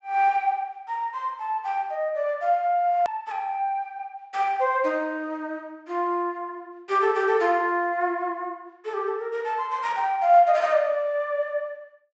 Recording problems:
treble cut off; nothing above 8 kHz
hard cut with a click; at 3 s

